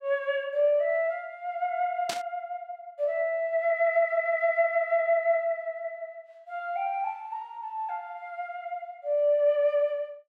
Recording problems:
static burst; at 2 s; peak -1 dB vs average level

